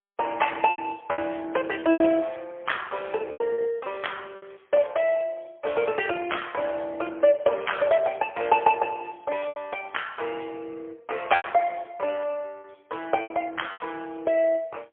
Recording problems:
telephone audio; 280 Hz to 3.3 kHz, AMR-NB, then MP3
lost packets; 5% of the sound replaced, filled with repeated pitch periods

